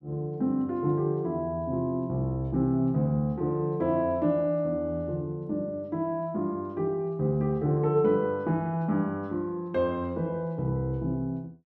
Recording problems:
none

